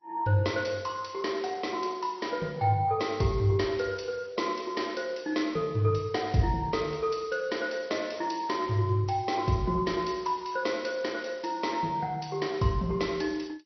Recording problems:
codec artefacts; Vorbis, then MP2, log-spectral distance 5 dB, nothing above 5.8 kHz

